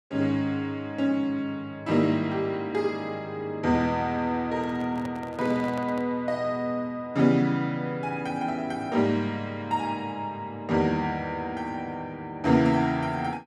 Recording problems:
handling noise; from 4.5 to 6 s; peak -7 dB vs average level

